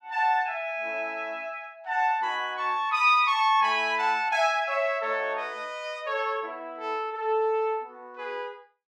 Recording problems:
none

